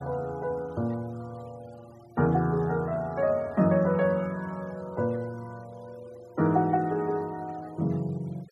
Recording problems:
denoising artefacts; signal-to-artefact ratio 27 dB

